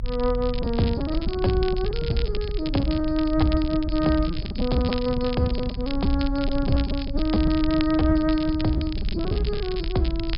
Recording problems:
treble cut off; nothing above 5.5 kHz
rumble; below 80 Hz, SNR 7 dB
crackling; vinyl, SNR 14 dB
packet loss; 15% of the sound replaced, filled with repeated pitch periods

